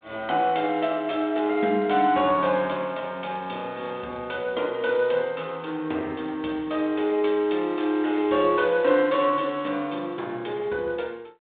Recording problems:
telephone audio; 240 Hz to 3.8 kHz, G.726

